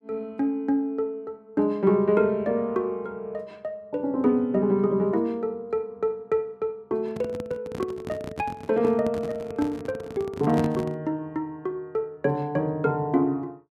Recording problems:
handling noise; from 7 to 11 s; peak +1 dB vs average level

